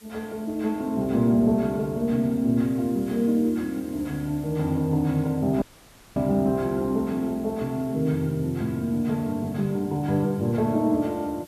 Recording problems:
background hiss; slope 0 dB per octave, SNR 26 dB
dropout; at 5.5 s for 0.5 s

